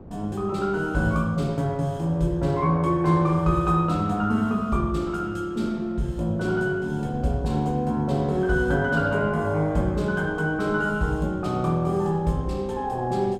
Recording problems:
wind on the microphone; below 350 Hz, SNR 19 dB

